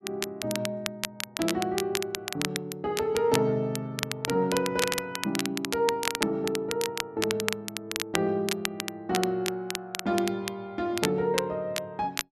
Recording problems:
crackling; vinyl, SNR 4 dB

